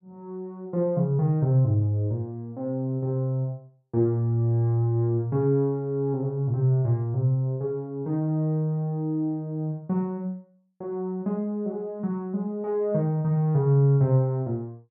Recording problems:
none

